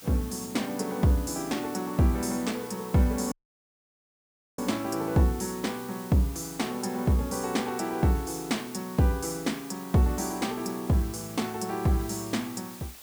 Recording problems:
hiss; slope 0 dB per octave, SNR 16 dB
audio cutting out; at 3.5 s for 1.5 s

